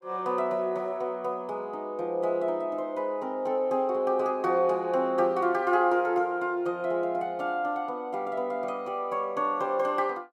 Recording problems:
none

